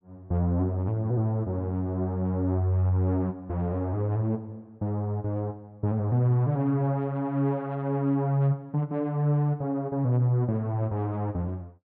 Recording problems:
none

